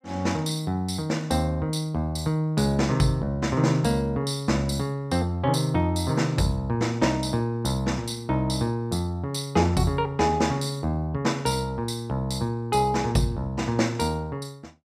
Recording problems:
none

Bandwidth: 15.5 kHz